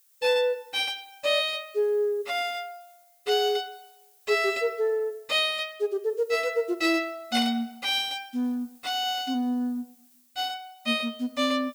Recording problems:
hiss; slope +3 dB per octave, SNR 29 dB

